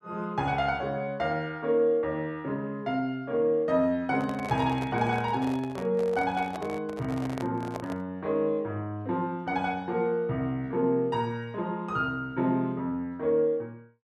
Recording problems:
handling noise; from 4 to 8 s; peak -4 dB vs average level

